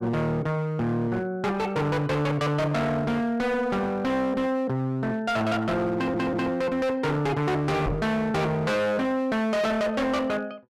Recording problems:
distorted audio; hard clipping, signal-to-distortion ratio 7 dB
stutter; at 6 s
microphone bump; at 8 s; peak -1 dB vs average level

